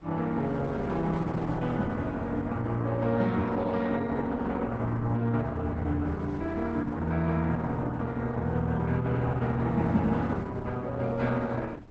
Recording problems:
lossy compression; Opus, log-spectral distance 3 dB, nothing above 7.3 kHz
wind noise; below 420 Hz, SNR 20 dB

